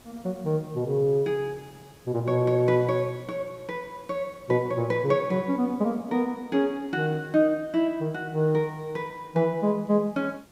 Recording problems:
background hiss; slope -4 dB per octave, SNR 28 dB

